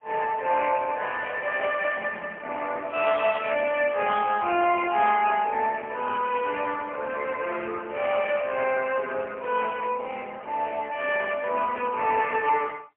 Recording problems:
phone line; 320 Hz to 3.3 kHz, AMR-NB, then MP3

